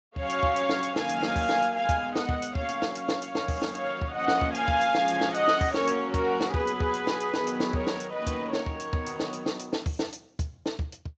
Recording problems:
lossy compression; Speex, log-spectral distance 5 dB, nothing above 7.3 kHz

